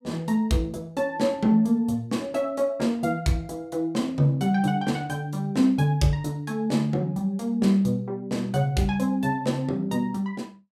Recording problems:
none

